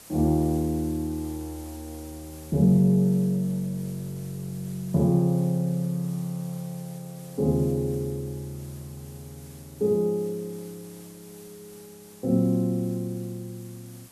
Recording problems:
background hiss; slope -2 dB per octave, SNR 22 dB

